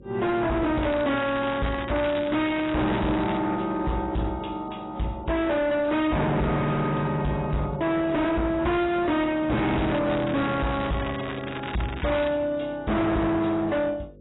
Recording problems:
lossy codec; AAC, log-spectral distance 6 dB, nothing above 3.8 kHz
distortion; hard clipping, signal-to-distortion ratio 6 dB
hum; 50 Hz, harmonics up to 550 Hz, SNR 24 dB
crackling; from 1 to 3.5 s and from 9.5 to 12 s; loose cable, SNR 12 dB

